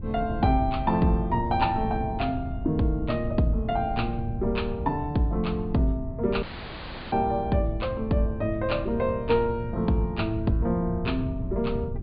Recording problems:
treble missing; nothing above 4.7 kHz
wind on the microphone; below 120 Hz, SNR 8 dB
audio cutting out; at 6.5 s for 0.5 s

